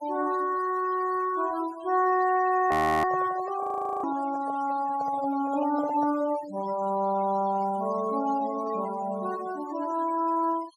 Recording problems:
noise reduction artefacts; signal-to-artefact ratio 17 dB
frozen audio; at 2.5 s and at 3.5 s
handling noise; from 3 to 6.5 s; peak -8 dB vs average level

